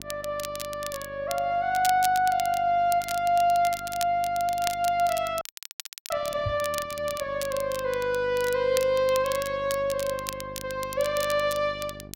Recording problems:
electrical hum; 50 Hz, harmonics up to 1.1 kHz, SNR 20 dB
crackling; vinyl, SNR 12 dB
frozen audio; at 5.5 s for 0.5 s
knock on the microphone; at 6.5 s; peak -1 dB vs average level

